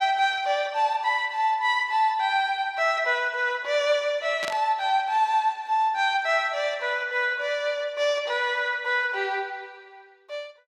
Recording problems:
static burst; at 4.5 s; peak -4 dB vs average level

